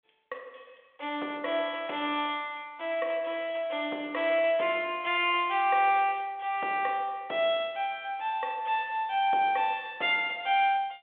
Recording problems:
phone line; 300 Hz to 3.5 kHz, G.726

